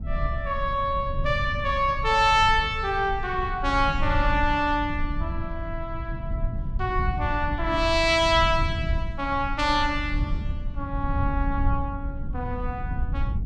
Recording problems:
rumble; below 90 Hz, SNR 6 dB

